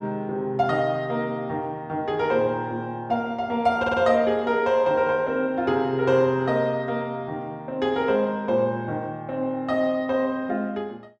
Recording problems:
audio stuttering; at 4 s

